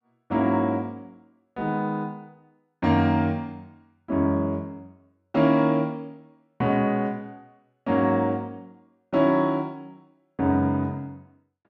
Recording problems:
none

